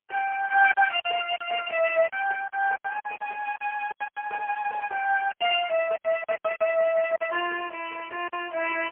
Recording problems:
telephone audio; 320 Hz to 3.1 kHz, AMR-NB, then MP3
lost packets; 11% of the sound replaced, filled with silence

